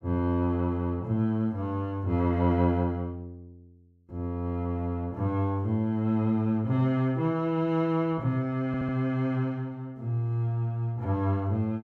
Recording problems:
audio stuttering; at 8.5 s

